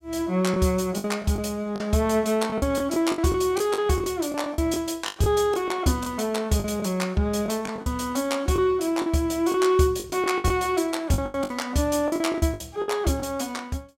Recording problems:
packet loss; 11% of the sound replaced, filled with the last packet

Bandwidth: 16 kHz